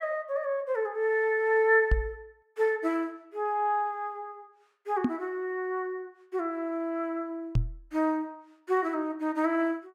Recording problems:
microphone bump; at 2 s, at 5 s and at 7.5 s; peak +6 dB vs average level

